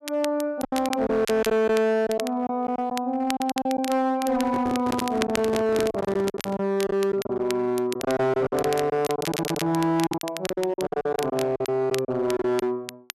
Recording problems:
distorted audio; hard clipping, signal-to-distortion ratio 11 dB
crackling; vinyl, SNR 13 dB
lost packets; 12% of the sound replaced, filled with silence
microphone handling noise; from 4.5 to 6.5 s; peak 0 dB vs average level
stutter; at 9 s

